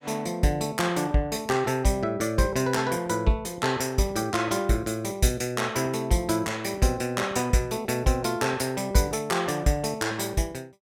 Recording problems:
none

